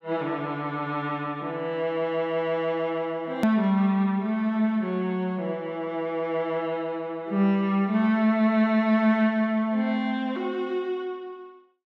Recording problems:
hard cut with a click; at 3.5 s

